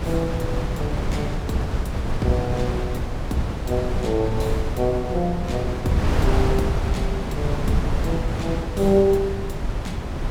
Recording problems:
wind on the microphone; below 240 Hz, SNR 1 dB

